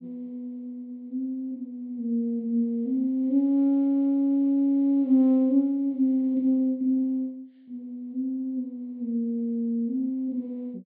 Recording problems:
treble missing; nothing above 4.5 kHz

